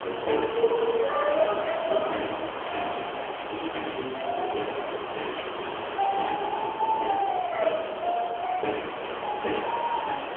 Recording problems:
phone line; 280 Hz to 3.3 kHz, AMR-NB
hiss; SNR 6 dB
crackle; from 2.5 to 4 s; loose cable, SNR 19 dB

